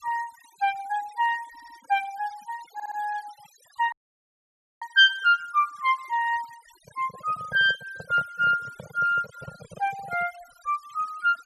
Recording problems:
noise reduction artefacts; signal-to-artefact ratio 22 dB
audio stuttering; at 1.5 s and at 2.5 s
dropout; at 4 s for 1 s
handling noise; from 7 to 10 s; peak -10 dB vs average level

